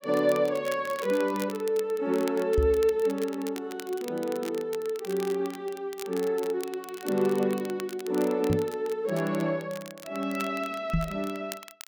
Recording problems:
crackling; vinyl, SNR 16 dB
microphone thump; at 2.5 s, at 8.5 s and at 11 s; peak +5 dB vs average level

